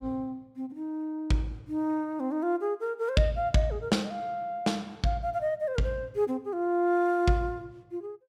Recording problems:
none

